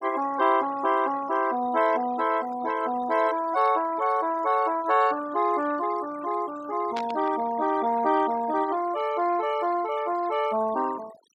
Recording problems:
noise reduction artefacts; signal-to-artefact ratio 19 dB
burst of static; at 7 s; peak -7 dB vs average level

